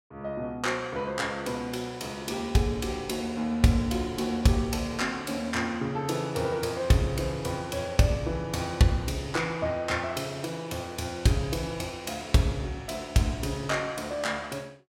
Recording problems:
none

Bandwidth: 16.5 kHz